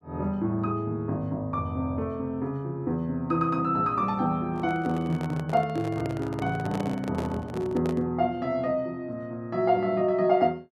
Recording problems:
handling noise; from 4.5 to 8 s; peak -3 dB vs average level

